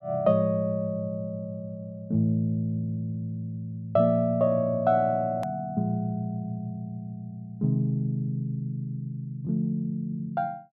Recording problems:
hard cut with a click; at 5.5 s

